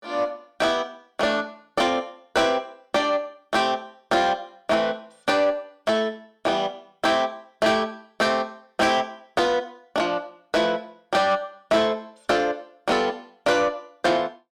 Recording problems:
distorted audio; soft clipping, signal-to-distortion ratio 12 dB

